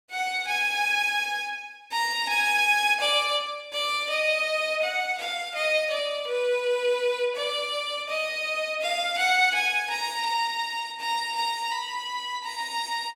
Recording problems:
none

